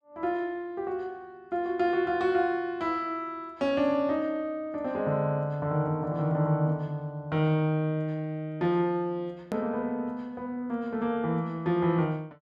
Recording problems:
hard cut with a click; at 9.5 s

